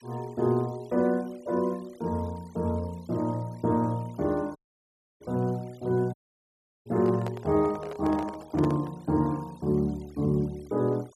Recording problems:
noise reduction artefacts; signal-to-artefact ratio 27 dB
dropout; at 4.5 s for 0.5 s and at 6 s for 0.5 s
microphone handling noise; from 7 to 9 s; peak -4 dB vs average level

